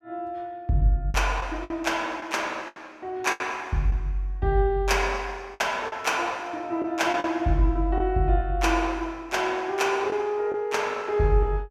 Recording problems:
packet loss; 5% of the sound replaced, filled with the last packet

